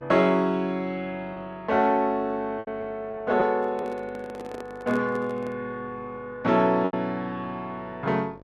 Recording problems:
hum; 50 Hz, harmonics up to 1.7 kHz, SNR 25 dB
packet loss; 3% of the sound replaced, filled with repeated pitch periods
microphone handling noise; from 3.5 to 5.5 s; peak -8 dB vs average level

